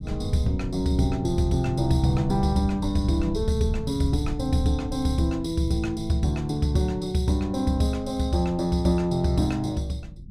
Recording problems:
rumble; below 140 Hz, SNR 11 dB

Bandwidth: 16 kHz